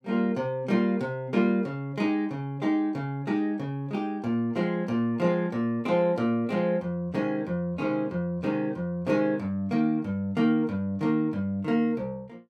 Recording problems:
none

